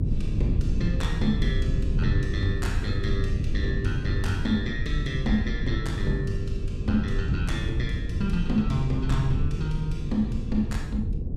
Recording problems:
electrical hum; 50 Hz, harmonics up to 500 Hz, SNR 11 dB
rumble; below 120 Hz, SNR 0 dB

